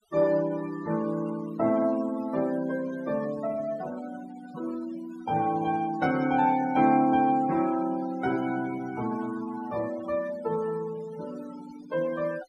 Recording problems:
denoising artefacts; signal-to-artefact ratio 18 dB

